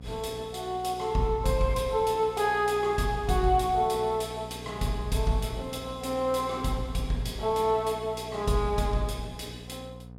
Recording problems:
hum; 60 Hz, harmonics up to 1 kHz, SNR 16 dB

